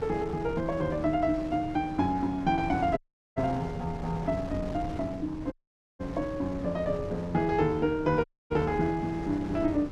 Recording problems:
wind on the microphone; below 440 Hz, SNR 10 dB
dropout; at 3 s, at 5.5 s and at 8 s

